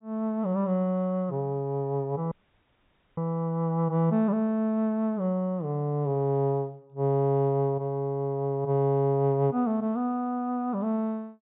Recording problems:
low-pass filter; nothing above 4 kHz
dropout; at 2.5 s for 1 s

